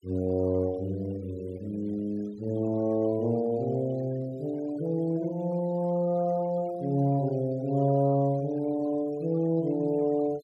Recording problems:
denoising artefacts; signal-to-artefact ratio 25 dB

